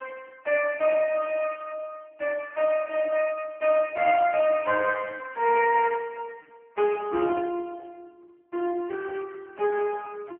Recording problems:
telephone audio; 260 Hz to 3.1 kHz, AMR-NB

